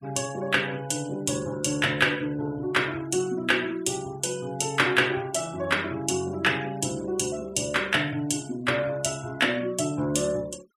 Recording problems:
denoising artefacts; signal-to-artefact ratio 22 dB

